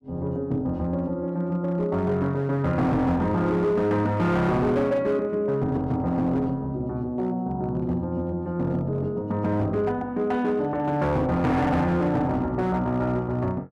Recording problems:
distortion; hard clipping, signal-to-distortion ratio 12 dB

